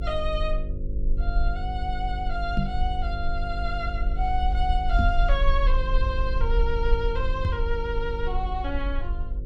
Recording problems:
hum; 50 Hz, harmonics up to 550 Hz, SNR 7 dB
low-frequency rumble; below 46 Hz, strongest tone 24 Hz, SNR -1 dB
microphone bump; at 2.5 s, at 5 s and at 7.5 s; peak +9 dB vs average level

